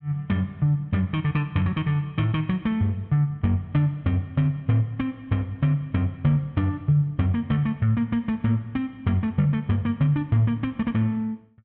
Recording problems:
none

